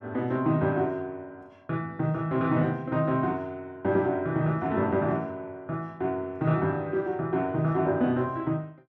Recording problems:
none

